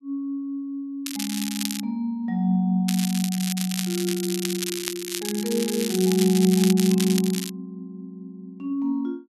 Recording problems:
crackle; at 1 s and from 3 to 7.5 s; loose cable, SNR 6 dB

